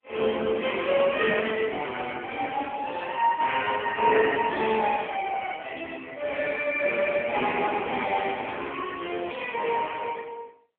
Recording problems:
phone line; 260 Hz to 3.4 kHz, AMR-NB

